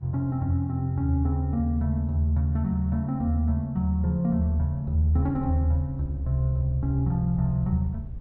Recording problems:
wind on the microphone; below 100 Hz, SNR 18 dB

